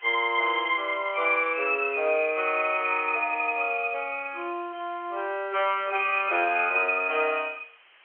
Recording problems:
telephone audio; 300 Hz to 3.3 kHz, G.711
hiss; SNR 27 dB

